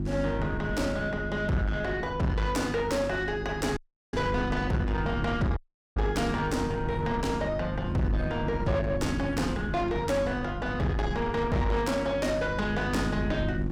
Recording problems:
distorted audio; soft clipping, signal-to-distortion ratio 8 dB
electrical hum; 50 Hz, harmonics up to 350 Hz, SNR 7 dB
wind on the microphone; below 240 Hz, SNR 9 dB
audio cutting out; at 4 s and at 5.5 s

